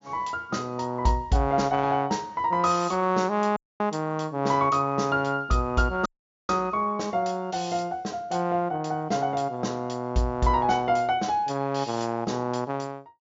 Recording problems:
treble cut off; nothing above 7.3 kHz
audio cutting out; at 3.5 s and at 6 s

